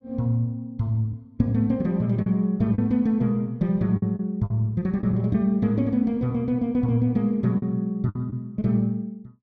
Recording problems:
lost packets; 4% of the sound replaced, filled with the last packet

